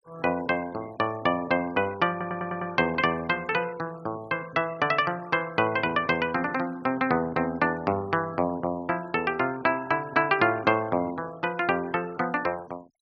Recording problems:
noise reduction artefacts; signal-to-artefact ratio 24 dB
stutter; at 2 s

